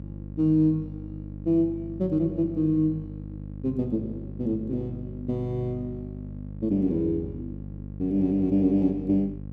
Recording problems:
electrical hum; 50 Hz, harmonics up to 550 Hz, SNR 12 dB

